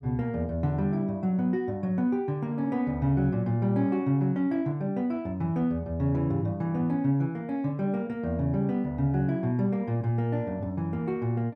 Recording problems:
none

